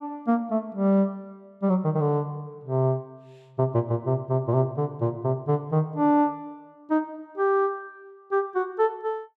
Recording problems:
none

